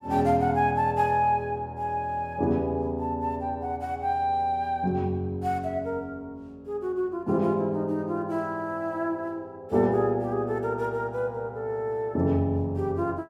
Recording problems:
none

